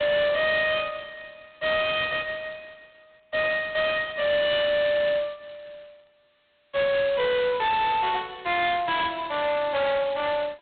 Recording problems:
phone line; 370 Hz to 3.7 kHz, G.726
distorted audio; hard clipping, signal-to-distortion ratio 7 dB

